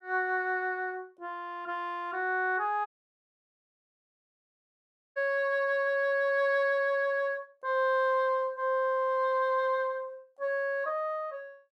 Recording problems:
dropout; at 3 s for 2.5 s

